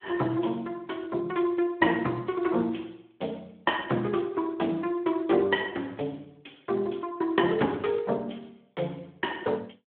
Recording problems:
telephone audio; 190 Hz to 3.4 kHz, Speex

